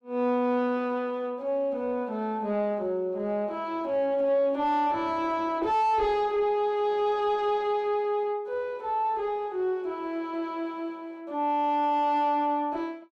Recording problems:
distortion; soft clipping, signal-to-distortion ratio 6 dB

